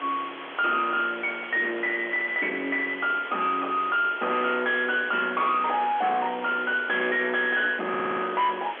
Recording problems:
telephone audio; 260 Hz to 3.8 kHz, G.711
distorted audio; soft clipping, signal-to-distortion ratio 7 dB
background hiss; SNR 12 dB
stutter; at 8 s

